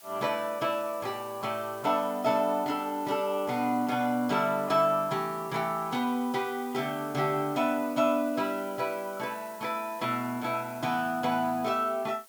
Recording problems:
hiss; slope 0 dB per octave, SNR 20 dB

